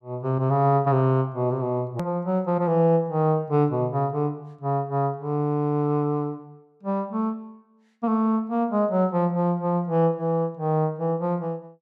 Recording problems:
hard cut with a click; at 2 s

